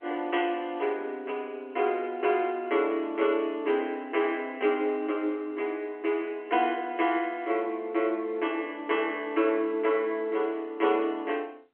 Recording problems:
telephone audio; 240 Hz to 3.3 kHz, G.711

